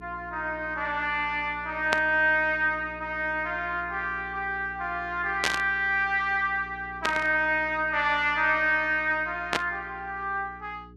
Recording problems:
electrical hum; 60 Hz, harmonics up to 420 Hz, SNR 21 dB
static burst; 4 times, first at 2 s; peak +4 dB vs average level

